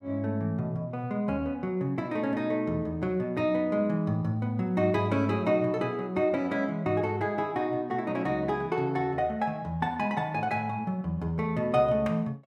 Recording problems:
none

